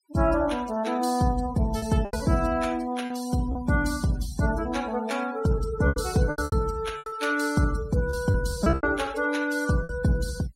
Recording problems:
denoising artefacts; signal-to-artefact ratio 17 dB
lost packets; 8% of the sound replaced, filled with repeated pitch periods

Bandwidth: 16 kHz